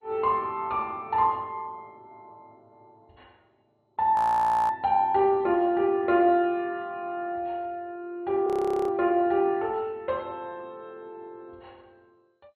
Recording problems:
lossy compression; MP2, log-spectral distance 2 dB, nothing above 13.1 kHz
audio freezing; at 4 s for 0.5 s and at 8.5 s

